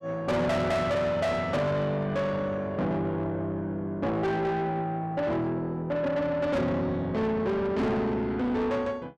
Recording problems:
distortion; soft clipping, signal-to-distortion ratio 7 dB

